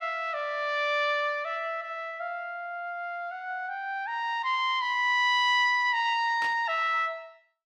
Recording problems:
static burst; at 6.5 s; peak -10 dB vs average level

